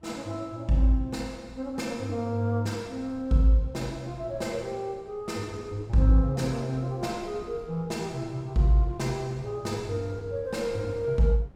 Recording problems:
wind on the microphone; below 290 Hz, SNR 22 dB

